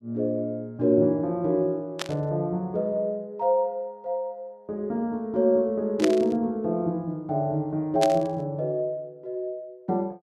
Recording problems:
burst of static; at 2 s, at 6 s and at 8 s; peak +1 dB vs average level

